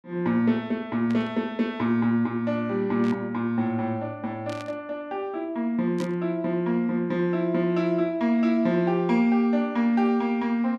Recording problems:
static burst; 4 times, first at 1 s; peak -11 dB vs average level

